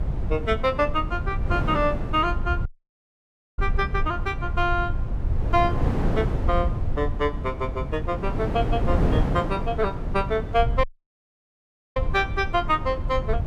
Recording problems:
rumble; below 82 Hz, SNR 4 dB
wind on the microphone; below 400 Hz, SNR 6 dB
audio cutting out; at 2.5 s for 1 s and at 11 s for 1 s

